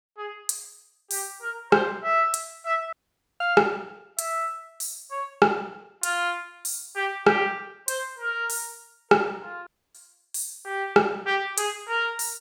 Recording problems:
dropout; at 3 s and at 9.5 s

